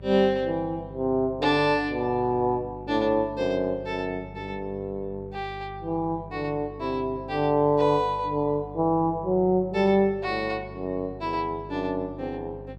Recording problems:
hum; 50 Hz, harmonics up to 750 Hz, SNR 17 dB

